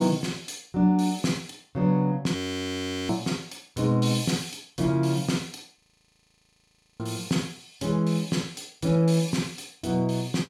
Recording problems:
audio freezing; at 2.5 s for 0.5 s and at 6 s for 1 s

